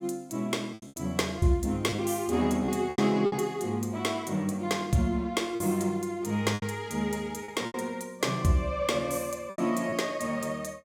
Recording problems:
lost packets; 7% of the sound replaced, filled with repeated pitch periods

